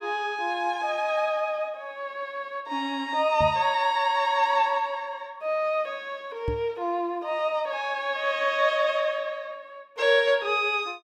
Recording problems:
microphone bump; at 3.5 s and at 6.5 s; peak -2 dB vs average level

